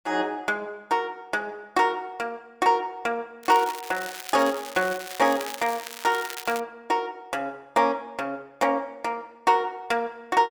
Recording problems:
crackling; from 3.5 to 6.5 s; loose cable, SNR 11 dB

